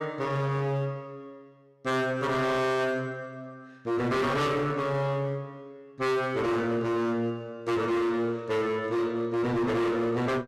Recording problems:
distorted audio; hard clipping, signal-to-distortion ratio 6 dB

